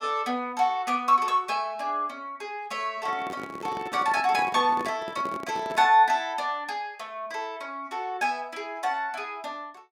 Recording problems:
microphone handling noise; from 3 to 6 s; peak -6 dB vs average level

